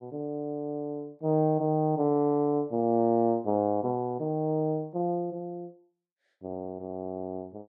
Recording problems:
none

